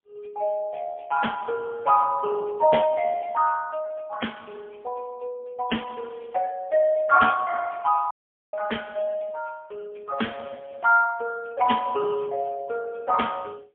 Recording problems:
phone line; 260 Hz to 3.3 kHz, AMR-NB, then MP3
dropout; at 8 s

